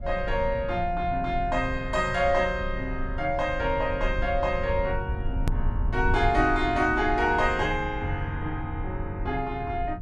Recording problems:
rumble; below 80 Hz, SNR 7 dB
edit click; at 5.5 s

